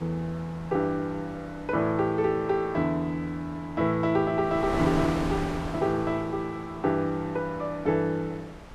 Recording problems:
wind on the microphone; below 1 kHz, SNR 12 dB

